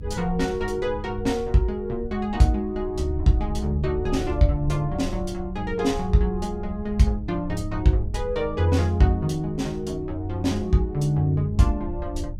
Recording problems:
rumble; below 76 Hz, SNR 11 dB

